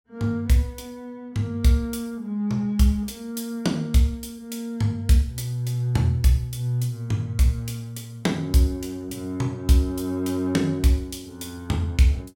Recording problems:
none

